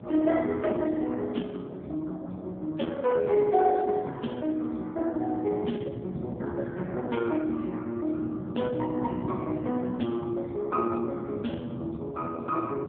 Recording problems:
phone line; 130 Hz to 3 kHz, AMR-NB
wind noise; below 260 Hz, SNR 12 dB

